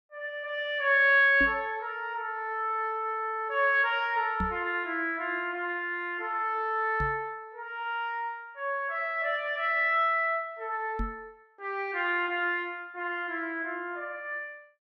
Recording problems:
microphone bump; 4 times, first at 1.5 s; peak -1 dB vs average level

